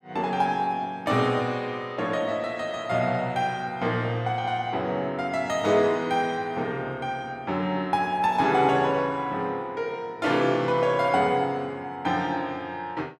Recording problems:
none

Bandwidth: 15 kHz